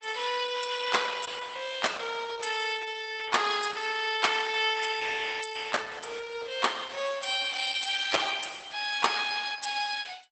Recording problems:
codec artefacts; Opus, log-spectral distance 7 dB, nothing above 8.2 kHz

